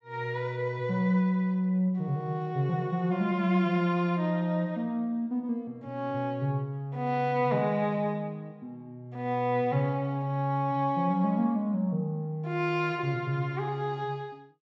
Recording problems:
low-pass filter; nothing above 8 kHz

